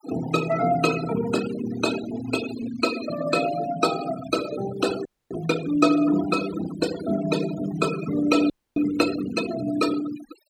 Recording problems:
noise reduction artefacts; signal-to-artefact ratio 10 dB
frozen audio; at 5 s and at 8.5 s

